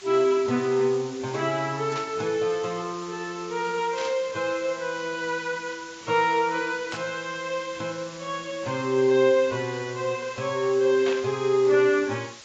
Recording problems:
lossy compression; AAC, log-spectral distance 9 dB, nothing above 6.3 kHz
hiss; slope +1 dB per octave, SNR 17 dB
static burst; 4 times, first at 2 s; peak -5 dB vs average level

